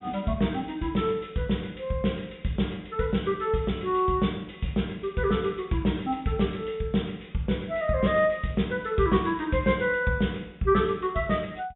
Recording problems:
treble cut off; nothing above 3.7 kHz

